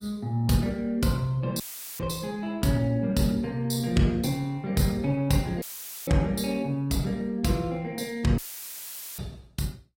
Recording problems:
lossy codec; Opus, log-spectral distance 3 dB, nothing above 16.5 kHz
audio cutting out; at 1.5 s, at 5.5 s and at 8.5 s for 1 s; filled with static

